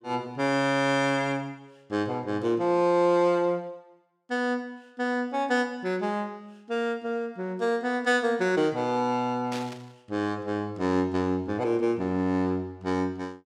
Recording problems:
burst of static; at 9.5 s; peak -7 dB vs average level

